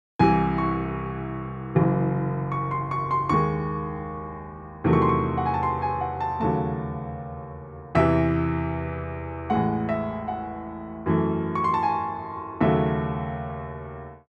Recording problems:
none

